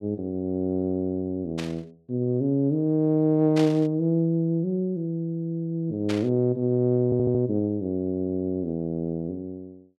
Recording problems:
static burst; at 1.5 s, at 3.5 s and at 6 s; peak -5 dB vs average level
audio stuttering; at 7 s and at 8 s

